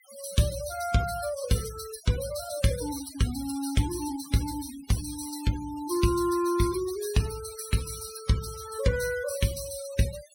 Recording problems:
denoising artefacts; signal-to-artefact ratio 12 dB

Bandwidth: 16.5 kHz